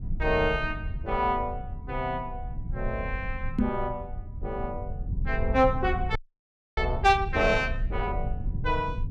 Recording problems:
low-frequency rumble; below 86 Hz, SNR 6 dB
knock on the microphone; at 3.5 s; peak +7 dB vs average level
frozen audio; at 6 s for 0.5 s

